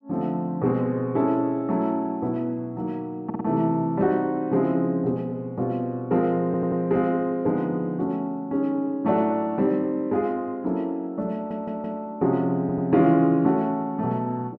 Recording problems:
audio stuttering; 4 times, first at 3.5 s

